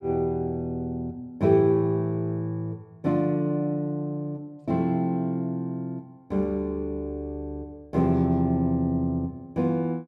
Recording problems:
none

